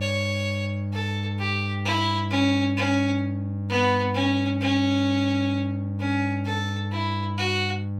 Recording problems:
hum; 50 Hz, harmonics up to 600 Hz, SNR 4 dB

